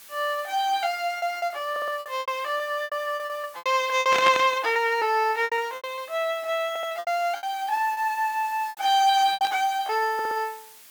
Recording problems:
background hiss; slope +2 dB per octave, SNR 21 dB
lost packets; 13% of the sound replaced, filled with repeated pitch periods
stutter; at 1.5 s, at 6.5 s and at 10 s
static burst; at 4 s and at 9.5 s; peak +3 dB vs average level

